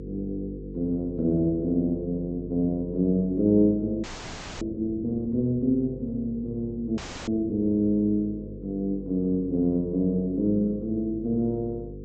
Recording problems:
treble missing; nothing above 8 kHz
hum; 50 Hz, harmonics up to 500 Hz, SNR 13 dB
audio freezing; at 4 s for 0.5 s and at 7 s

